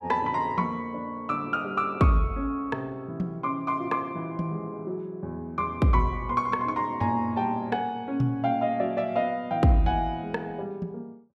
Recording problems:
none

